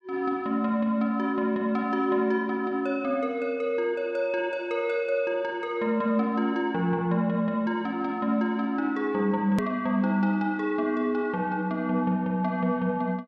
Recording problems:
hard cut with a click; at 9.5 s

